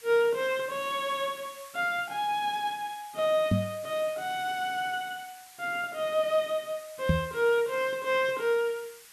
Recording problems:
background hiss; SNR 19 dB
knock on the microphone; at 3.5 s and at 7 s; peak +7 dB vs average level

